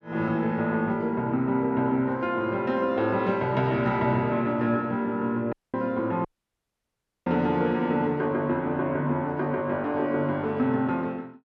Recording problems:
audio cutting out; at 5.5 s and at 6.5 s for 1 s

